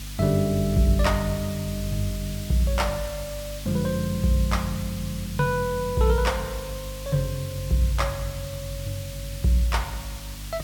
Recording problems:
hum; 50 Hz, harmonics up to 300 Hz, SNR 13 dB
hiss; slope +2 dB per octave, SNR 13 dB

